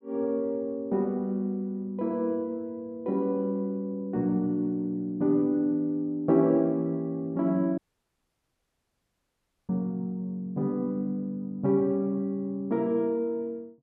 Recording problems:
dropout; at 8 s for 2 s

